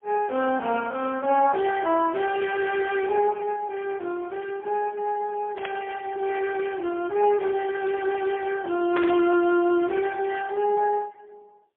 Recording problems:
phone line; 260 Hz to 2.7 kHz, AMR-NB, then MP3
burst of static; at 5.5 s and at 9 s; peak -3 dB vs average level

